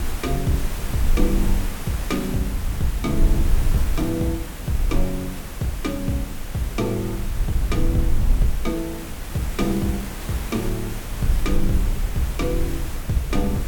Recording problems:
background hiss; slope -4 dB per octave, SNR 8 dB
rumble; below 56 Hz, strongest tone 22 Hz, SNR 1 dB

